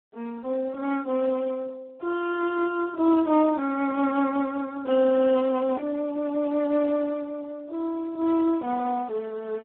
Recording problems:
phone line; 240 Hz to 2 kHz, Speex

